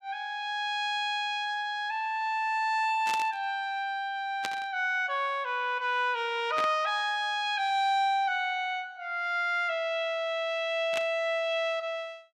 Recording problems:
burst of static; 4 times, first at 3 s; peak -2 dB vs average level

